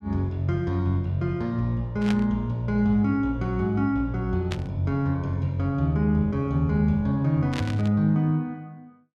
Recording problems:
static burst; at 2 s, at 4.5 s and at 7.5 s; peak -5 dB vs average level

